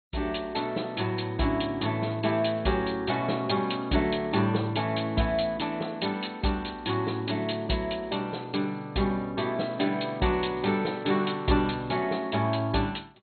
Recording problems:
lossy compression; MP2, log-spectral distance 5 dB, nothing above 4.2 kHz
crackling; at 2 s and from 9.5 to 12 s; loose cable, SNR 27 dB

